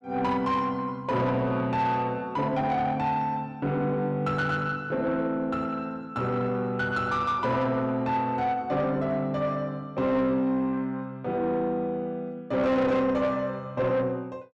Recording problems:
distorted audio; soft clipping, signal-to-distortion ratio 11 dB

